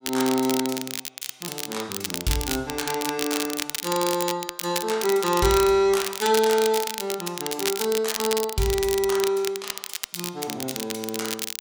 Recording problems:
crackle; vinyl, SNR 5 dB

